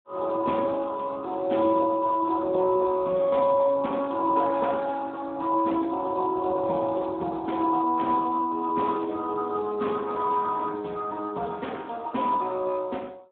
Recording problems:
telephone audio; 130 Hz to 3.6 kHz, Speex

